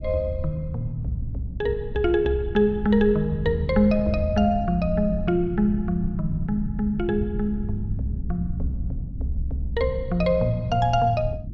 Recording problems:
low-frequency rumble; below 120 Hz, SNR 9 dB

